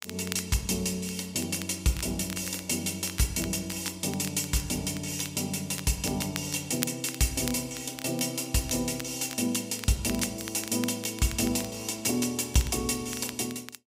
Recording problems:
crackle; vinyl, SNR 13 dB

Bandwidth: 15.5 kHz